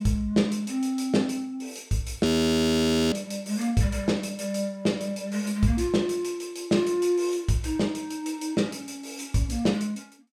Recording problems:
audio freezing; at 2.5 s for 1 s

